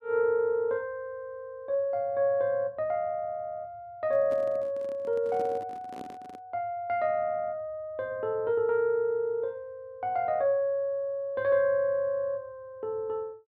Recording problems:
handling noise; from 4 to 6.5 s; peak -9 dB vs average level

